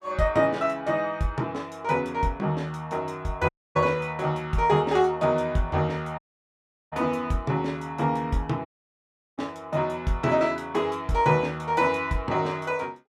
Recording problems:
dropout; at 3.5 s, at 6 s for 0.5 s and at 8.5 s for 0.5 s

